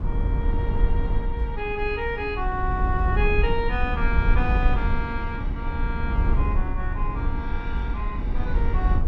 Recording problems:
rumble; below 74 Hz, SNR -3 dB

